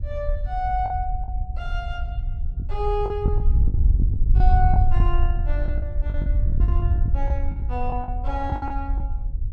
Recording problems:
wind on the microphone; below 68 Hz, SNR -6 dB
lost packets; 10% of the sound replaced, filled with the last packet

